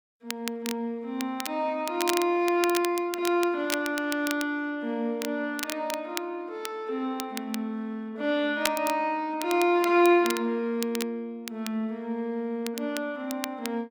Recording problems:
crackling; vinyl, SNR 9 dB

